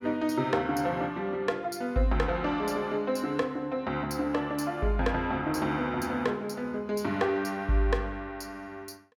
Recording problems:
none

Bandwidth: 17 kHz